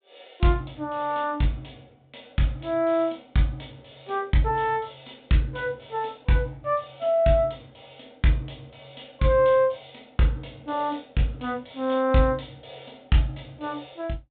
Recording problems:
low-pass filter; nothing above 4 kHz

